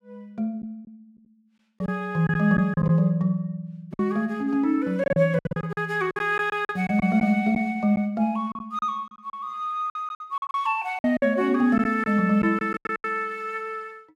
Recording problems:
packet loss; 10% of the sound replaced, filled with silence

